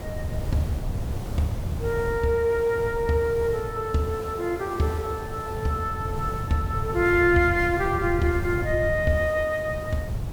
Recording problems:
hiss; slope -7 dB per octave, SNR 15 dB
wind noise; below 130 Hz, SNR 8 dB

